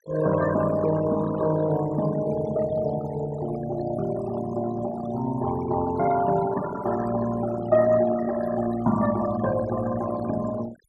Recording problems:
denoising artefacts; signal-to-artefact ratio 13 dB

